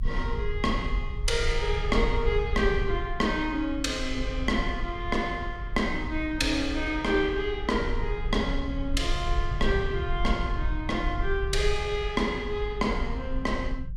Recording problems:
rumble; below 60 Hz, SNR 5 dB

